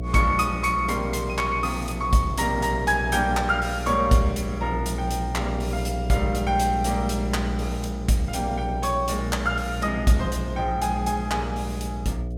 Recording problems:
electrical hum; 60 Hz, harmonics up to 720 Hz, SNR 6 dB

